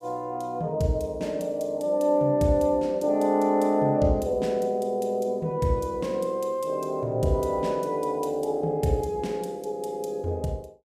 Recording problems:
none

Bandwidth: 15.5 kHz